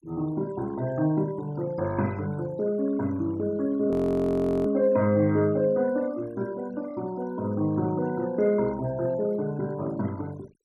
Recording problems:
denoising artefacts; signal-to-artefact ratio 22 dB
frozen audio; at 4 s for 1 s

